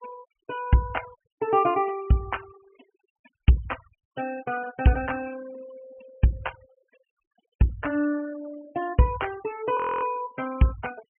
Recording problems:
treble missing; nothing above 3.1 kHz
noise reduction artefacts; signal-to-artefact ratio 19 dB
frozen audio; at 10 s

